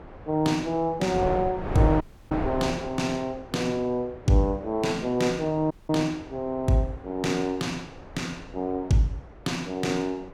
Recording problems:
wind noise; below 710 Hz, SNR 11 dB
audio cutting out; at 2 s and at 5.5 s

